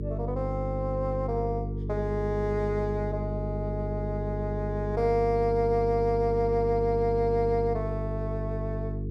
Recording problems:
hum; 50 Hz, harmonics up to 450 Hz, SNR 4 dB

